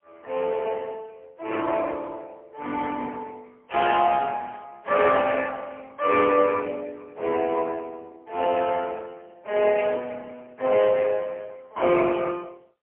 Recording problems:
phone line; 280 Hz to 3.3 kHz, AMR-NB, then MP3

